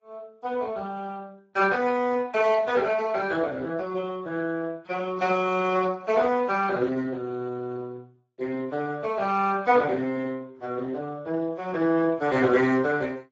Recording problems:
lossy codec; AAC, then Speex, log-spectral distance 3 dB

